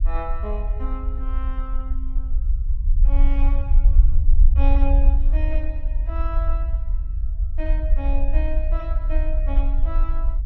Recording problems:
rumble; below 50 Hz, strongest tone 26 Hz, SNR -11 dB

